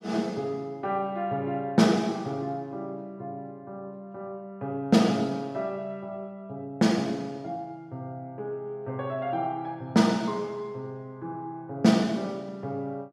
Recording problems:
none

